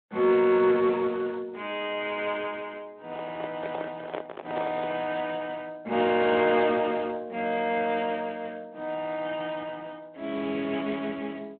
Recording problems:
phone line; 170 Hz to 3.5 kHz, Speex
handling noise; from 3 to 5 s; peak -3 dB vs average level

